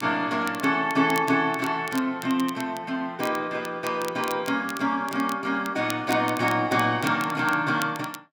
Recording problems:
crackle; vinyl, SNR 16 dB

